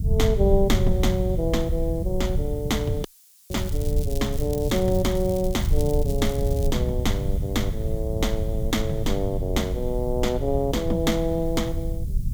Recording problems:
background hiss; SNR 24 dB
rumble; below 98 Hz, SNR 2 dB
dropout; at 3 s
crackle; from 3.5 to 6.5 s; loose cable, SNR 15 dB

